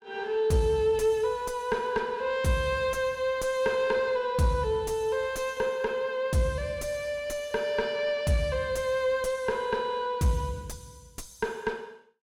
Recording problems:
distortion; soft clipping, signal-to-distortion ratio 10 dB

